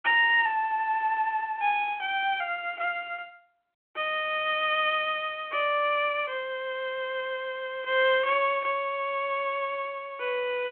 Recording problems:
phone line; 300 Hz to 3.3 kHz, G.726

